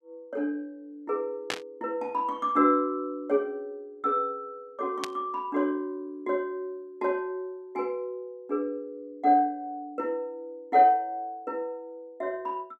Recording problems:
burst of static; at 1.5 s and at 5 s; peak +2 dB vs average level

